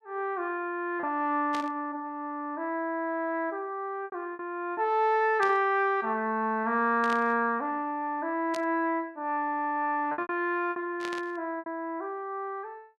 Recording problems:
lost packets; 4% of the sound replaced, filled with repeated pitch periods
burst of static; 5 times, first at 1.5 s; peak -6 dB vs average level

